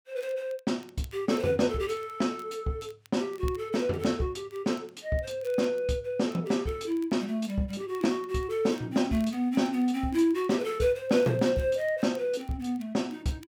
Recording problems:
crackling; vinyl, SNR 29 dB

